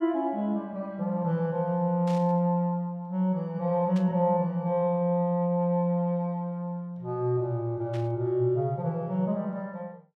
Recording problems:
static burst; at 2 s, at 4 s and at 8 s; peak -14 dB vs average level

